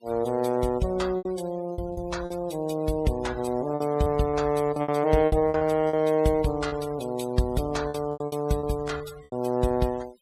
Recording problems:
noise reduction artefacts; signal-to-artefact ratio 20 dB
packet loss; 10% of the sound replaced, filled with repeated pitch periods

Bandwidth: 14.5 kHz